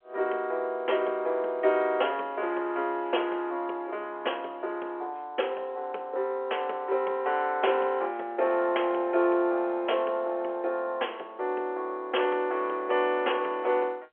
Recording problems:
phone line; 340 Hz to 3.5 kHz, G.711

